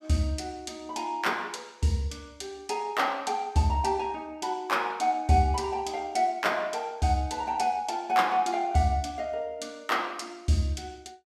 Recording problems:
none

